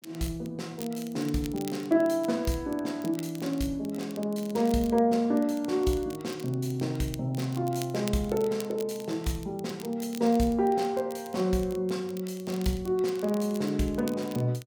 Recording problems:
crackling; vinyl, SNR 19 dB

